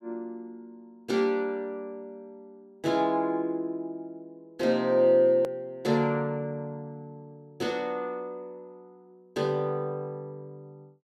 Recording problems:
hard cut with a click; at 5.5 s

